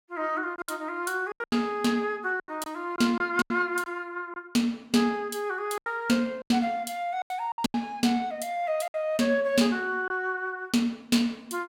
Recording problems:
packet loss; 8% of the sound replaced, filled with silence

